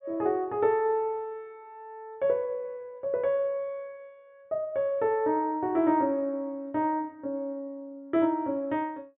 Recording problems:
treble cut off; nothing above 4 kHz

